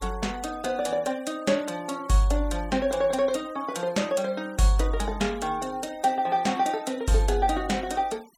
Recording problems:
noise reduction artefacts; signal-to-artefact ratio 22 dB

